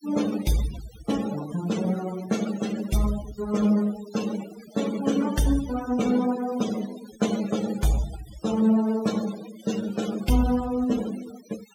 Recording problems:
denoising artefacts; signal-to-artefact ratio 12 dB

